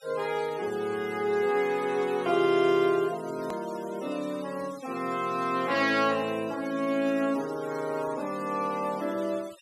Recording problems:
denoising artefacts; signal-to-artefact ratio 19 dB
hard cut with a click; at 3.5 s

